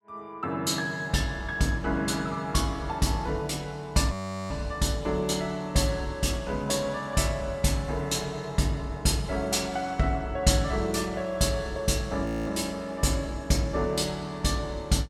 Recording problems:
audio freezing; at 4 s and at 12 s

